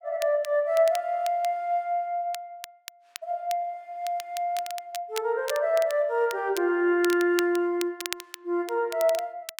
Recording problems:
crackle; vinyl, SNR 14 dB

